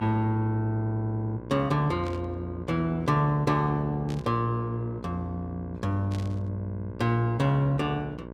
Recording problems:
hum; 60 Hz, harmonics up to 1.6 kHz, SNR 13 dB
burst of static; at 2 s, at 4 s and at 6 s; peak -12 dB vs average level

